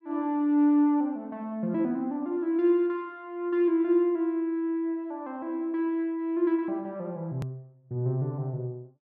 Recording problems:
click at an edit; at 7.5 s

